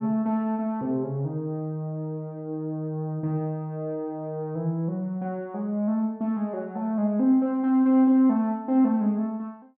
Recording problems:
none

